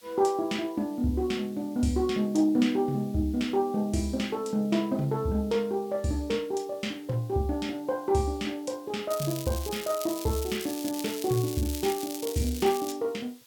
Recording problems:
hiss; slope +2 dB per octave, SNR 26 dB
crackle; from 9 to 13 s; loose cable, SNR 10 dB

